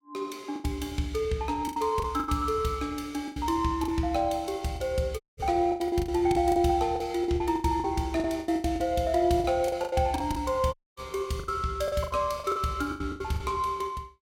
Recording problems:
lost packets; 15% of the sound replaced, filled with the last packet
dropout; at 5 s and at 11 s

